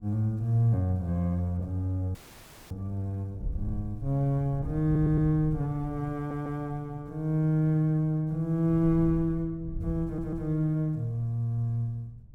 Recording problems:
wind noise; below 96 Hz, SNR 13 dB
frozen audio; at 2 s for 0.5 s
stutter; at 5 s, at 6 s and at 10 s

